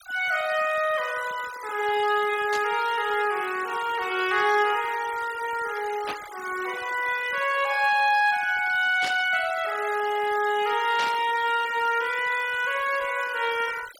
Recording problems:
noise reduction artefacts; signal-to-artefact ratio 16 dB
static burst; 4 times, first at 2.5 s; peak -4 dB vs average level

